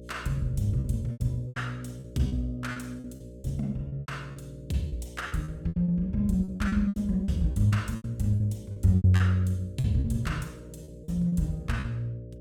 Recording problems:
hum; 60 Hz, harmonics up to 600 Hz, SNR 17 dB
packet loss; 14% of the sound replaced, filled with repeated pitch periods

